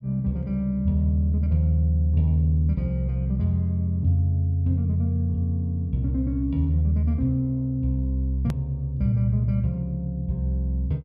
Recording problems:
click at an edit; at 8.5 s

